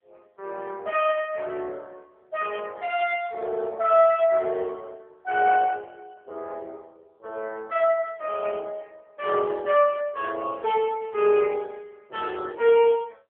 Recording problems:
phone line; 320 Hz to 3.5 kHz, AMR-NB

